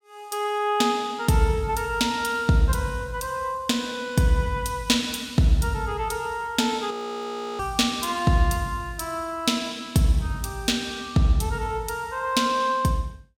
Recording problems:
audio freezing; at 7 s for 0.5 s

